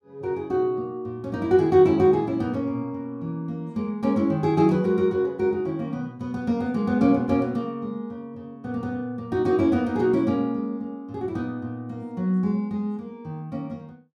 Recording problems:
none

